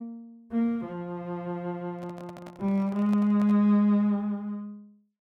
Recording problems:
handling noise; from 2 to 3.5 s; peak -11 dB vs average level

